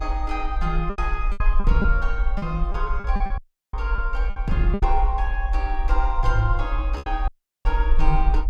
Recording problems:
electrical hum; 60 Hz, harmonics up to 660 Hz, SNR 23 dB
low-frequency rumble; below 50 Hz, SNR -2 dB
packet loss; 8% of the sound replaced, filled with repeated pitch periods
dropout; at 3.5 s and at 7.5 s

